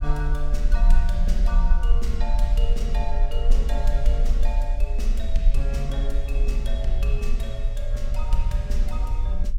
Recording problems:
low-frequency rumble; below 42 Hz, strongest tone 22 Hz, SNR -7 dB

